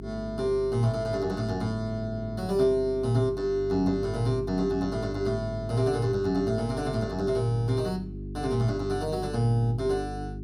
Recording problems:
hum; 50 Hz, harmonics up to 400 Hz, SNR 11 dB

